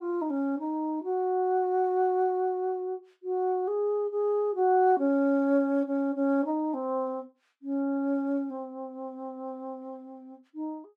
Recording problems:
none

